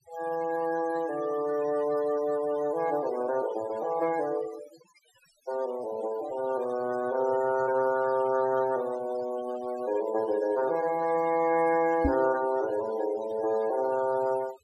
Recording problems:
noise reduction artefacts; signal-to-artefact ratio 16 dB
microphone bump; at 12 s; peak +5 dB vs average level

